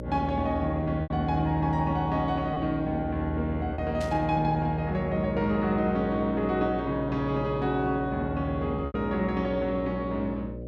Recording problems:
electrical hum; 60 Hz, harmonics up to 600 Hz, SNR 9 dB
packet loss; 2% of the sound replaced, filled with repeated pitch periods
static burst; at 4 s; peak -10 dB vs average level

